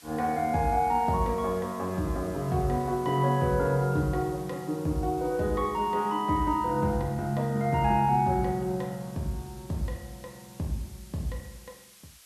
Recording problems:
hiss; slope +3 dB per octave, SNR 23 dB

